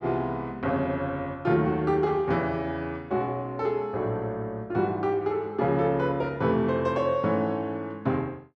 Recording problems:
none

